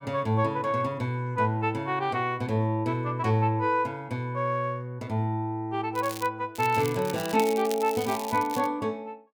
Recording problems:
crackle; at 6 s and from 6.5 to 8.5 s; loose cable, SNR 13 dB

